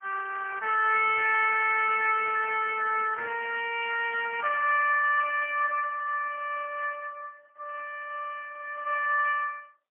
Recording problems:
telephone audio; 840 Hz to 2.6 kHz, AMR-NB, then MP3

